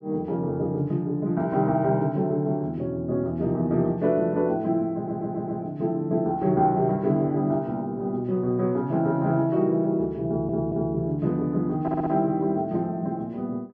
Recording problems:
audio stuttering; at 5 s, at 10 s and at 12 s

